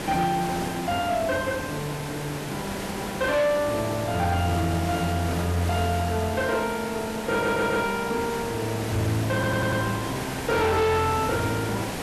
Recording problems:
distortion; hard clipping, signal-to-distortion ratio 11 dB
hiss; slope -5 dB per octave, SNR 6 dB
audio stuttering; at 7.5 s and at 9.5 s

